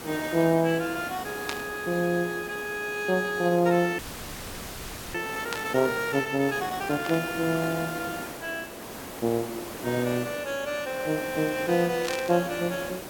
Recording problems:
background hiss; slope -5 dB per octave, SNR 11 dB
static burst; 4 times, first at 1.5 s; peak 0 dB vs average level
audio freezing; at 4 s for 1 s

